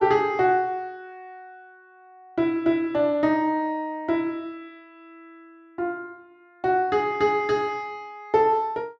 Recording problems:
none

